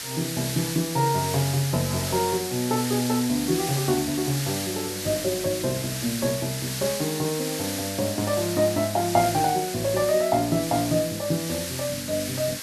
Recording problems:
hiss; SNR 5 dB

